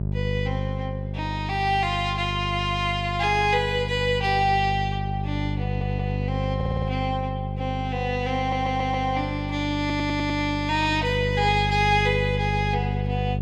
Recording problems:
electrical hum; 50 Hz, harmonics up to 600 Hz, SNR 4 dB
audio stuttering; 4 times, first at 5.5 s

